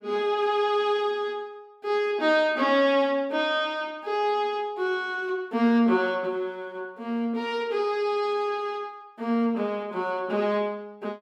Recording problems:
none

